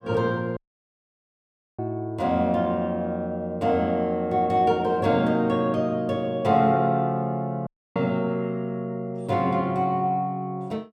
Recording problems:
dropout; at 0.5 s for 1 s and at 7.5 s

